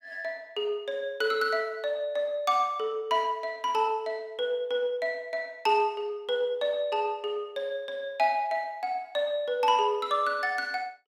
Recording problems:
none

